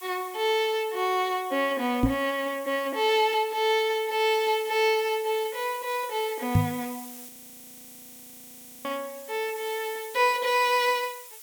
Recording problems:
hiss; SNR 16 dB
knock on the microphone; at 2 s and at 6.5 s; peak +8 dB vs average level
frozen audio; at 7.5 s for 1.5 s

